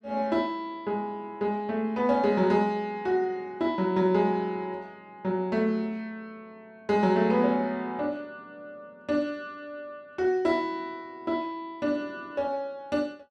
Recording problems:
none

